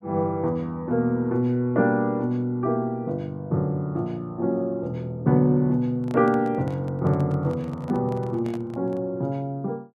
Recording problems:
handling noise; from 6 to 9 s; peak -11 dB vs average level

